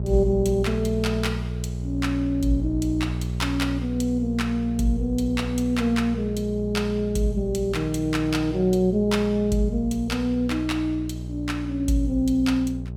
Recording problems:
hum; 60 Hz, harmonics up to 600 Hz, SNR 7 dB

